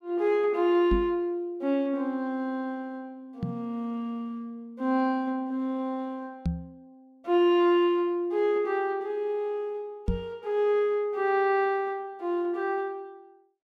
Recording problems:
microphone bump; 4 times, first at 1 s; peak +2 dB vs average level

